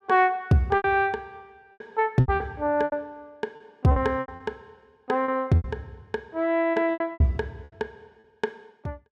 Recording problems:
lost packets; 13% of the sound replaced, filled with repeated pitch periods

